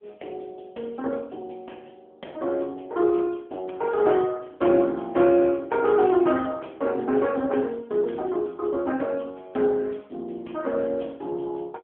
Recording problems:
telephone audio; 260 Hz to 3.4 kHz, AMR-NB

